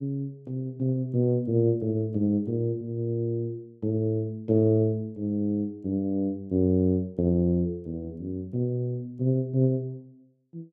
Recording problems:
none

